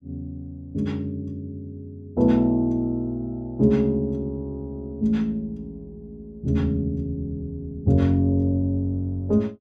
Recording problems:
none

